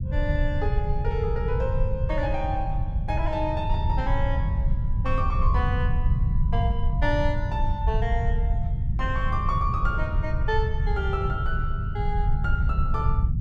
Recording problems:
rumble; below 98 Hz, SNR -4 dB

